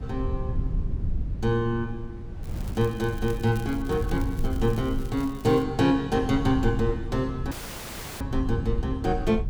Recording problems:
low-frequency rumble; below 96 Hz, SNR 7 dB
wind on the microphone; below 170 Hz, SNR 17 dB
crackling; from 2.5 to 5.5 s; loose cable, SNR 22 dB
dropout; at 7.5 s for 0.5 s

